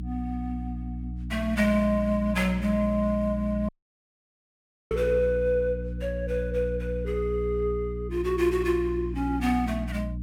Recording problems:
hum; 60 Hz, harmonics up to 300 Hz, SNR 7 dB
dropout; at 3.5 s for 1 s

